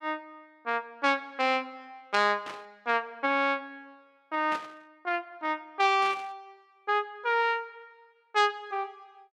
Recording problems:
burst of static; at 2.5 s, at 4.5 s and at 6 s; peak -7 dB vs average level

